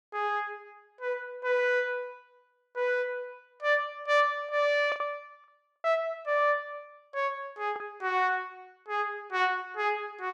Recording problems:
lost packets; 1.9% of the sound replaced, filled with the last packet

